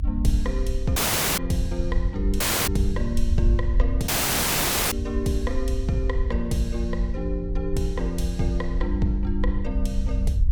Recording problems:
low-frequency rumble; below 64 Hz, SNR -1 dB
dropout; at 1 s, at 2.5 s and at 4 s for 1 s

